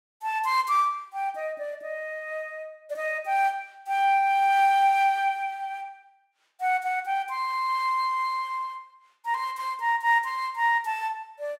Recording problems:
none

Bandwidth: 16 kHz